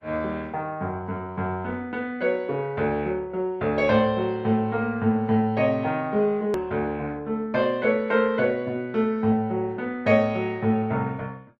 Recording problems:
codec artefacts; Opus, log-spectral distance 2 dB, nothing above 13.1 kHz
click at an edit; at 6.5 s

